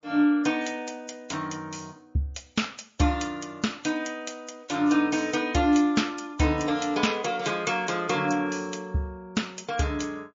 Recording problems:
lossy codec; MP3, log-spectral distance 4 dB, nothing above 6.5 kHz

